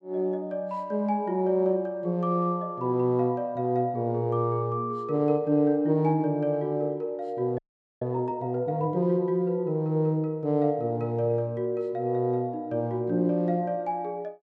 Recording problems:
frozen audio; at 7.5 s

